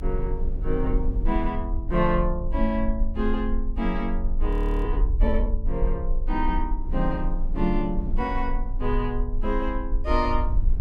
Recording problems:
low-frequency rumble; below 44 Hz, strongest tone 24 Hz, SNR 1 dB
wind noise; below 230 Hz, SNR 12 dB
frozen audio; at 4.5 s

